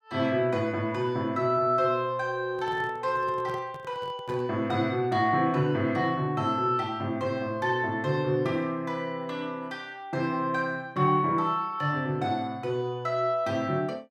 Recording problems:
microphone handling noise; from 2.5 to 4.5 s; peak -10 dB vs average level

